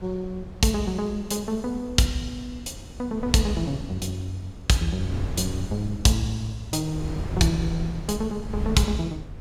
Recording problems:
wind on the microphone; below 160 Hz, SNR 10 dB

